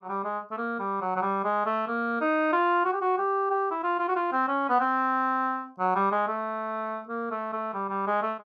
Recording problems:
none

